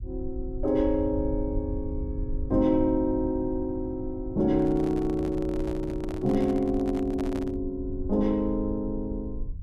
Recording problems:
rumble; below 80 Hz, SNR 10 dB
microphone handling noise; from 4.5 to 7.5 s; peak -7 dB vs average level

